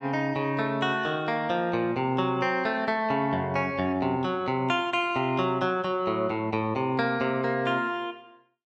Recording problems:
none

